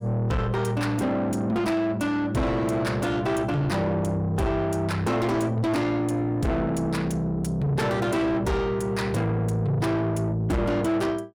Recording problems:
distorted audio; soft clipping, signal-to-distortion ratio 7 dB

